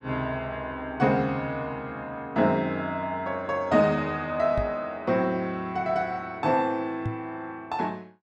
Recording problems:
microphone bump; at 4.5 s and at 7 s; peak 0 dB vs average level

